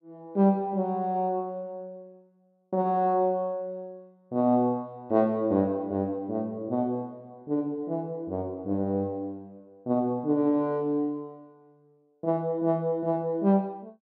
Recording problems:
none

